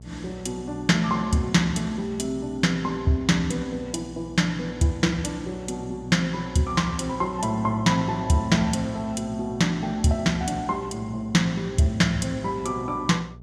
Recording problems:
hum; 60 Hz, harmonics up to 660 Hz, SNR 18 dB

